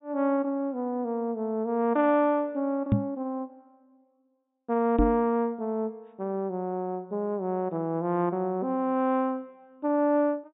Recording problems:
treble missing; nothing above 4 kHz
microphone bump; at 3 s and at 5 s; peak +8 dB vs average level

